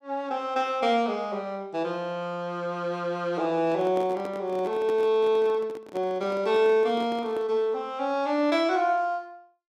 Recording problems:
handling noise; from 3.5 to 7.5 s; peak -7 dB vs average level

